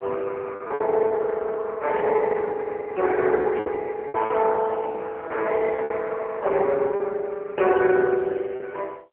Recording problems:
telephone audio; 320 Hz to 3.4 kHz, AMR-NB
packet loss; 6% of the sound replaced, filled with repeated pitch periods
burst of static; at 2 s and at 3.5 s; peak -9 dB vs average level

